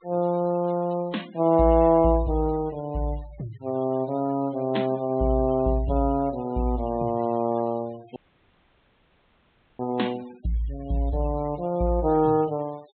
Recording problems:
treble missing; nothing above 4 kHz
denoising artefacts; signal-to-artefact ratio 25 dB
audio cutting out; at 8 s for 1.5 s

